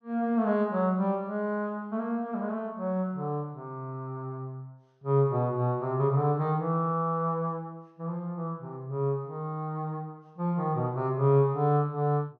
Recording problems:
none

